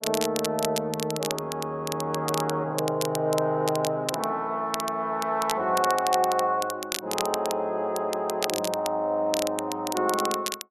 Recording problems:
crackle; vinyl, SNR 7 dB

